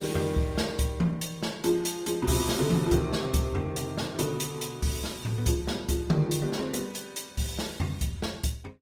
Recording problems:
lossy compression; Opus, log-spectral distance 5 dB

